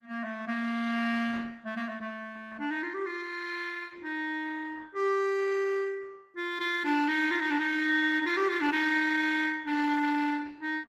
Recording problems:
lossy codec; Opus, log-spectral distance 4 dB, nothing above 14.7 kHz

